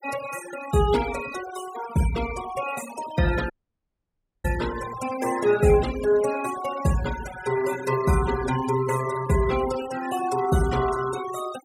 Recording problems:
denoising artefacts; signal-to-artefact ratio 12 dB
dropout; at 3.5 s for 1 s

